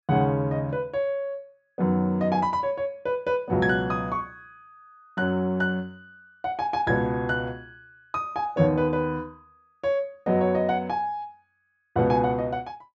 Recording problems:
treble missing; nothing above 8 kHz

